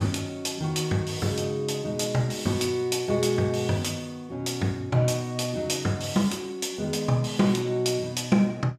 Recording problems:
none

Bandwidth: 14.5 kHz